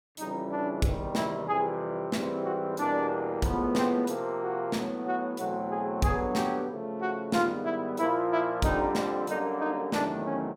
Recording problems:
none

